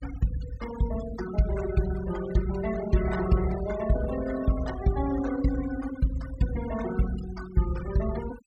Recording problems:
denoising artefacts; signal-to-artefact ratio 13 dB

